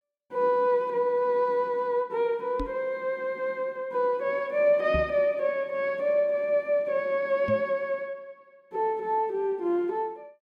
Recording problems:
microphone thump; at 2.5 s, at 5 s and at 7.5 s; peak -3 dB vs average level

